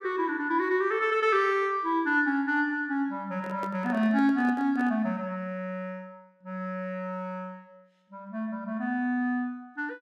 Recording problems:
handling noise; from 3.5 to 5 s; peak -7 dB vs average level

